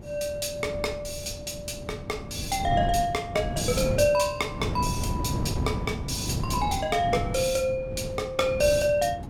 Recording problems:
wind noise; below 260 Hz, SNR 6 dB

